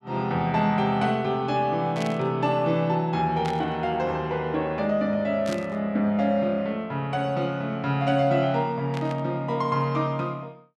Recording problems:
burst of static; 4 times, first at 2 s; peak -7 dB vs average level

